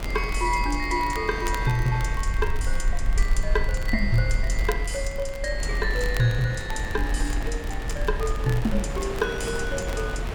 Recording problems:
low-frequency rumble; below 44 Hz, SNR 3 dB
wind noise; below 1.2 kHz, SNR 8 dB
crackle; vinyl, SNR 17 dB

